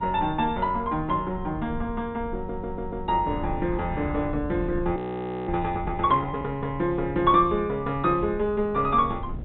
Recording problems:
treble cut off; nothing above 3.9 kHz
wind on the microphone; below 150 Hz, SNR 12 dB
audio stuttering; at 2.5 s
audio freezing; at 5 s for 0.5 s

